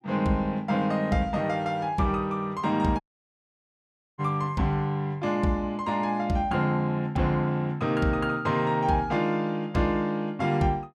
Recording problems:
dropout; at 3 s for 1 s

